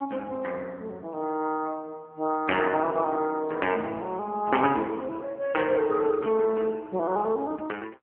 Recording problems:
telephone audio; 240 Hz to 3.2 kHz, AMR-NB

